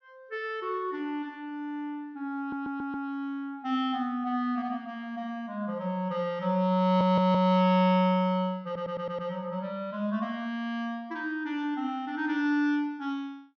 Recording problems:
low-pass filter; nothing above 6.5 kHz
audio stuttering; at 2.5 s, at 7 s and at 8.5 s

